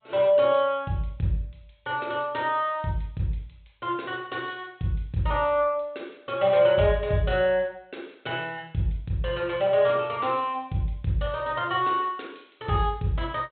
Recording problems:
treble missing; nothing above 4 kHz
lossy codec; G.722, log-spectral distance 3 dB

